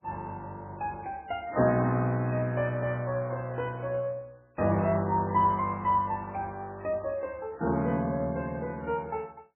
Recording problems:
lossy codec; MP3, log-spectral distance 2 dB, nothing above 2.5 kHz

